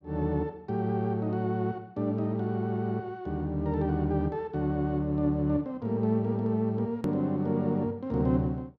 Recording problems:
hard cut with a click; at 7 s

